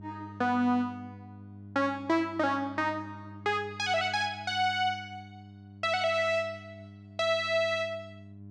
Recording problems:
hum; 50 Hz, harmonics up to 600 Hz, SNR 18 dB

